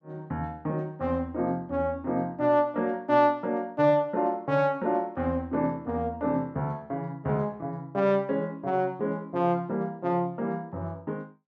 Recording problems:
none

